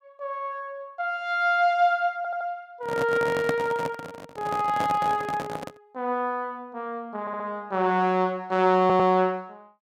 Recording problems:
audio stuttering; at 2 s, at 7 s and at 9 s
microphone handling noise; from 3 to 6 s; peak +1 dB vs average level

